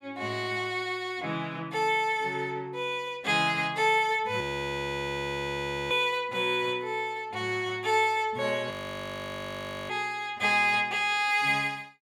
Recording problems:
frozen audio; at 4.5 s for 1.5 s and at 8.5 s for 1 s

